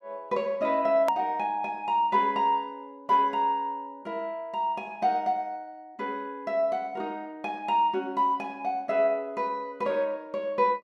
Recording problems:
hard cut with a click; at 1 s

